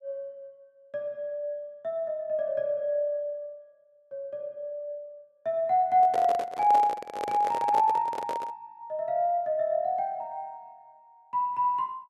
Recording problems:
handling noise; from 6 to 8.5 s; peak -2 dB vs average level

